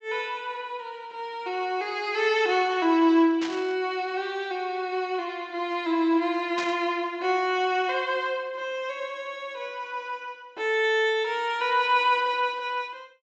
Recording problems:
treble missing; nothing above 8 kHz
burst of static; at 3.5 s and at 6.5 s; peak -5 dB vs average level

